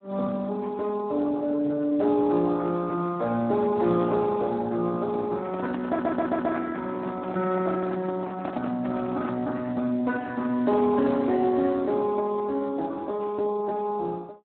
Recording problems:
phone line; 150 Hz to 2.8 kHz, Speex
handling noise; from 5 to 9.5 s; peak -4 dB vs average level
audio stuttering; at 6 s

